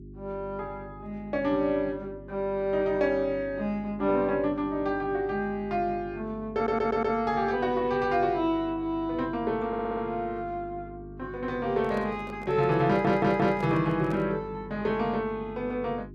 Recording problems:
hum; 50 Hz, harmonics up to 400 Hz, SNR 17 dB
stutter; at 6.5 s, at 9.5 s and at 13 s
handling noise; from 12 to 14 s; peak -9 dB vs average level

